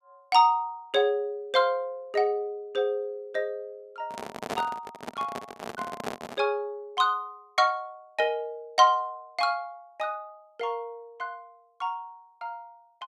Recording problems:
handling noise; from 4 to 6.5 s; peak 0 dB vs average level

